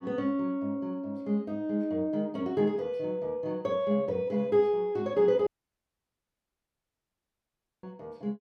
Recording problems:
dropout; at 5.5 s for 2.5 s

